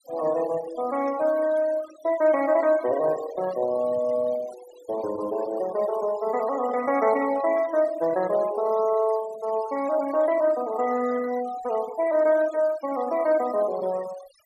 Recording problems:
denoising artefacts; signal-to-artefact ratio 17 dB

